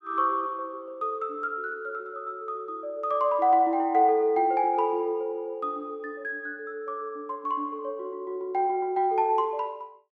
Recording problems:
none

